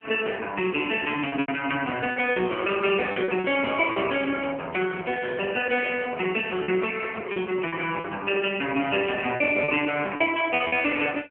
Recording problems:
phone line; 300 Hz to 3.2 kHz, AMR-NB
packet loss; 6% of the sound replaced, filled with repeated pitch periods
handling noise; from 5.5 to 8 s; peak -9 dB vs average level

